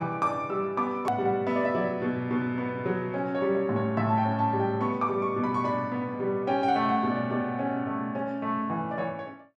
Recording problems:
edit click; at 1 s

